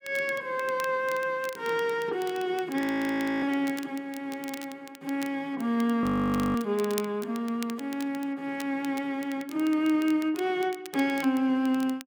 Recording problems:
crackling; vinyl, SNR 18 dB
audio freezing; at 3 s for 0.5 s and at 6 s for 0.5 s

